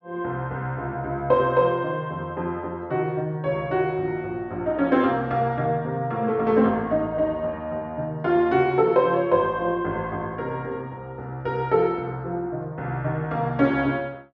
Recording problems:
low-pass filter; nothing above 6.7 kHz

